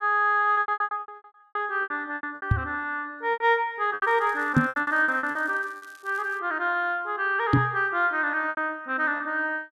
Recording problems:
lost packets; 14% of the sound replaced, filled with repeated pitch periods
microphone bump; at 2.5 s, at 4.5 s and at 7.5 s; peak +8 dB vs average level
crackling; from 4 to 6.5 s; loose cable, SNR 30 dB

